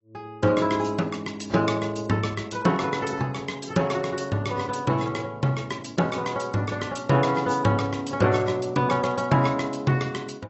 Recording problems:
codec artefacts; AAC, log-spectral distance 4 dB, nothing above 7.8 kHz

